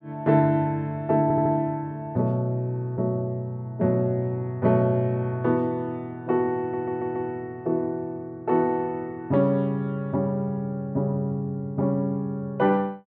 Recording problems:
stutter; at 1 s and at 6.5 s

